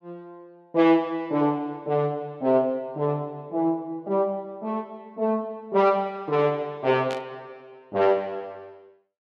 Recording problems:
static burst; at 7 s; peak -8 dB vs average level

